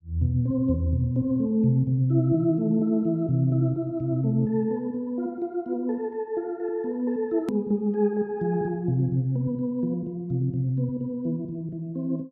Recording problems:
click at an edit; at 7.5 s

